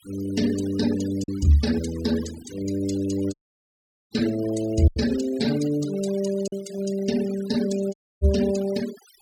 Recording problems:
denoising artefacts; signal-to-artefact ratio 14 dB
packet loss; 1.8% of the sound replaced, filled with silence
audio cutting out; at 3.5 s for 1 s and at 8 s

